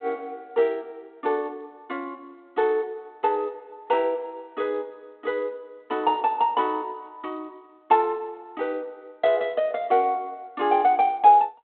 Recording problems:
telephone audio; 280 Hz to 3.5 kHz, G.726

